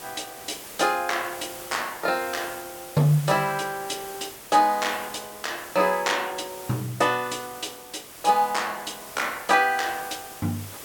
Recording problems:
hiss; slope -3 dB per octave, SNR 14 dB

